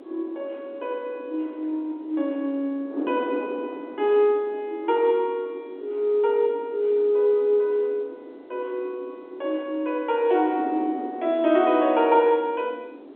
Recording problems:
telephone audio; 260 Hz to 3.5 kHz, G.711
wind on the microphone; below 450 Hz, SNR 15 dB

